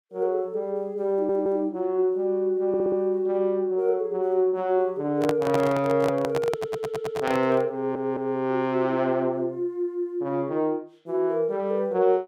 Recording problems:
audio stuttering; 4 times, first at 1 s
microphone handling noise; from 5 to 7.5 s; peak +1 dB vs average level

